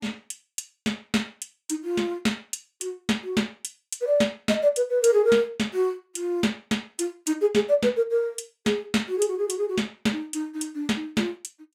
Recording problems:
none

